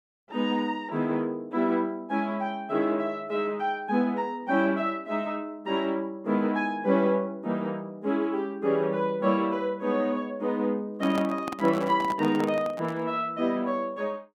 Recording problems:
microphone handling noise; from 11 to 13 s; peak -2 dB vs average level

